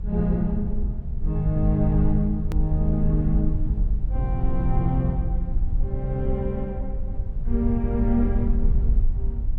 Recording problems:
rumble; below 58 Hz, SNR 1 dB
edit click; at 2.5 s

